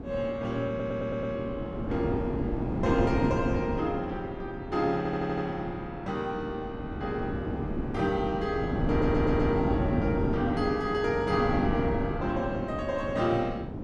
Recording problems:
wind noise; below 340 Hz, SNR 2 dB
audio stuttering; at 0.5 s, at 5 s and at 9 s

